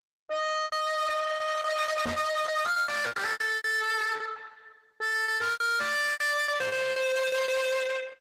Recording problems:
lossy compression; Opus, log-spectral distance 5 dB, nothing above 15.6 kHz
distortion; soft clipping, signal-to-distortion ratio 8 dB
lost packets; 16% of the sound replaced, filled with repeated pitch periods
knock on the microphone; at 2 s; peak +2 dB vs average level

